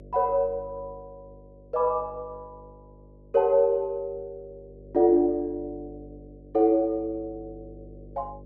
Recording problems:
hum; 50 Hz, harmonics up to 600 Hz, SNR 23 dB

